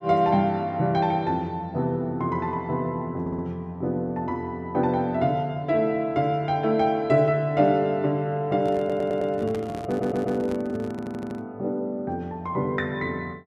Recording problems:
stutter; 4 times, first at 3 s
microphone handling noise; from 8.5 to 11 s; peak -5 dB vs average level

